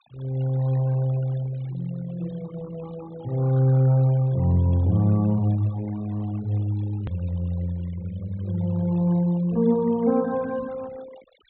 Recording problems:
treble cut off; nothing above 4 kHz
denoising artefacts; signal-to-artefact ratio 23 dB
edit click; at 7 s

